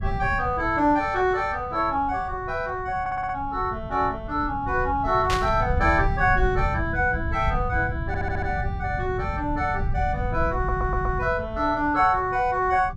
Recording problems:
low-frequency rumble; below 120 Hz, SNR 8 dB
audio stuttering; at 3 s, at 8 s and at 11 s
burst of static; at 5.5 s; peak 0 dB vs average level

